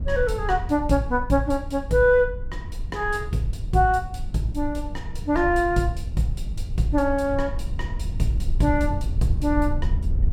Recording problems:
rumble; below 76 Hz, SNR 7 dB

